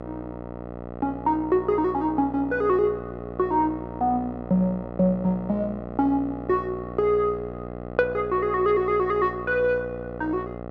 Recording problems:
hum; 60 Hz, harmonics up to 1.5 kHz, SNR 11 dB

